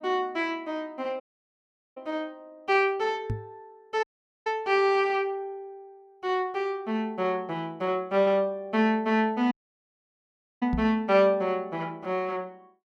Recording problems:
dropout; at 1 s for 1 s, at 4 s and at 9.5 s for 1 s
knock on the microphone; at 3.5 s and at 11 s; peak +1 dB vs average level

